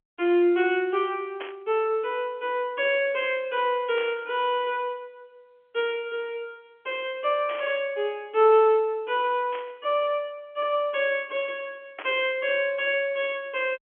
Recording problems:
telephone audio; 260 Hz to 3.4 kHz, G.711
static burst; 5 times, first at 1.5 s; peak -7 dB vs average level

